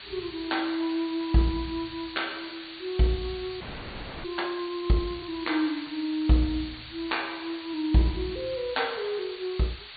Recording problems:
low-pass filter; nothing above 4.6 kHz
background hiss; SNR 12 dB
audio freezing; at 3.5 s for 0.5 s

